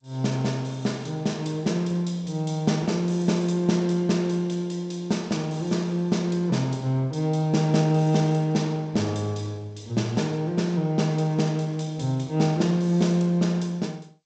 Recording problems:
lossy compression; G.722, log-spectral distance 3 dB, nothing above 7.6 kHz

